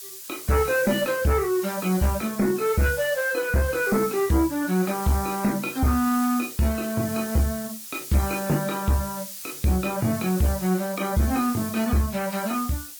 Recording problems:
lossy compression; MP3, log-spectral distance 3 dB
distortion; soft clipping, signal-to-distortion ratio 10 dB
hiss; slope +4 dB per octave, SNR 11 dB

